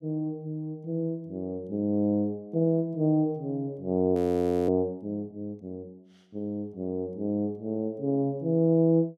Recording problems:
frozen audio; at 4 s for 0.5 s

